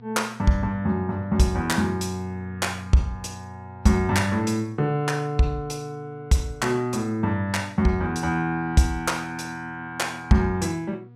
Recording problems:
mains hum; 60 Hz, harmonics up to 960 Hz, SNR 22 dB

